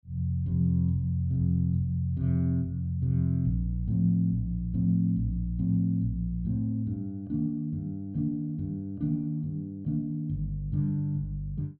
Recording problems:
none

